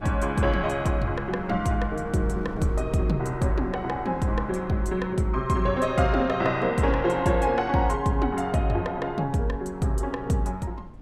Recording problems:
wind noise; below 190 Hz, SNR 17 dB

